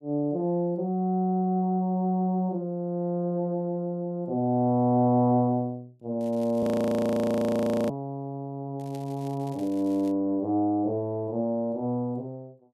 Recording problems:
crackle; at 6 s and from 9 to 10 s; loose cable, SNR 27 dB
frozen audio; at 6.5 s for 1.5 s

